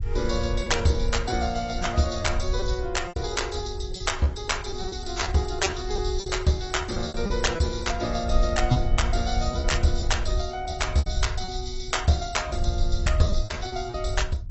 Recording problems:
lossy codec; AAC, log-spectral distance 6 dB, nothing above 7.8 kHz
rumble; below 74 Hz, SNR 5 dB
lost packets; 8% of the sound replaced, filled with repeated pitch periods

